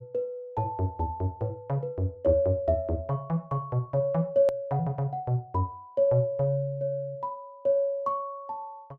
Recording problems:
hard cut with a click; at 4.5 s

